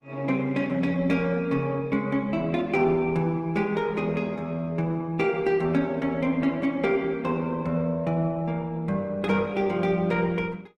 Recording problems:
lossy codec; Opus, log-spectral distance 2 dB, nothing above 18.3 kHz

